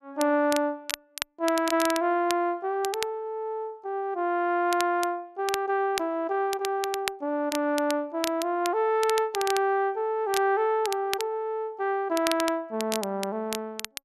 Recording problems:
crackle; vinyl, SNR 9 dB

